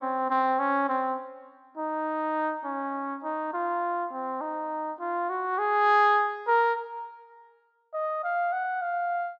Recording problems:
none

